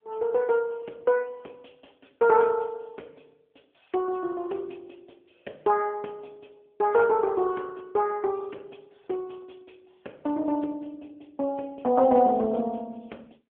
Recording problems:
telephone audio; 280 Hz to 3.4 kHz, AMR-NB

